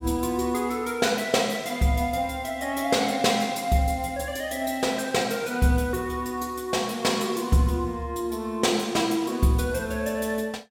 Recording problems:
none

